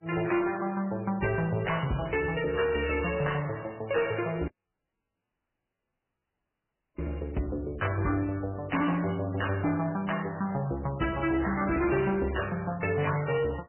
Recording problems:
lossy codec; MP3, log-spectral distance 6 dB, nothing above 2.4 kHz
distortion; soft clipping, signal-to-distortion ratio 10 dB
dropout; at 4.5 s for 2.5 s

